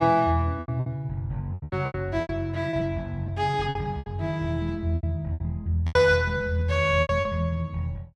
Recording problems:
packet loss; 13% of the sound replaced, filled with repeated pitch periods

